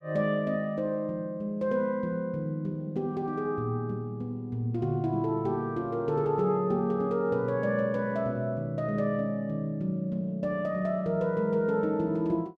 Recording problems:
none

